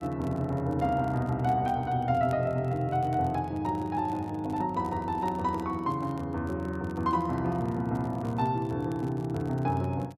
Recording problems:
crackle; vinyl, SNR 28 dB

